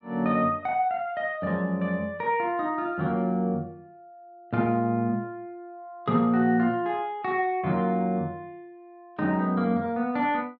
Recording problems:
none

